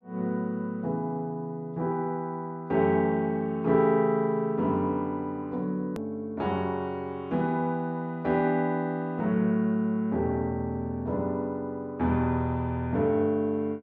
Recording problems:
treble missing; nothing above 8 kHz
edit click; at 6 s

